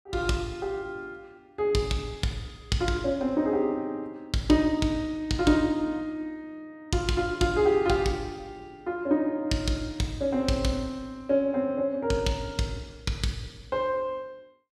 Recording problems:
none

